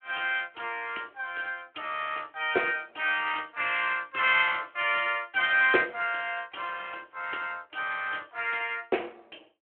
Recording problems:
telephone audio; 260 Hz to 3.5 kHz, Speex

